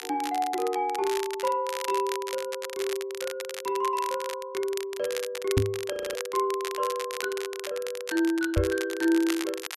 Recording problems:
crackle; vinyl, SNR 9 dB
microphone thump; at 5.5 s and at 8.5 s; peak +8 dB vs average level
frozen audio; at 6 s

